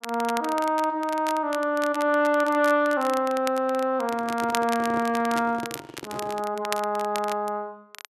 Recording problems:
crackle; vinyl, SNR 14 dB
microphone handling noise; from 4 to 6.5 s; peak -7 dB vs average level

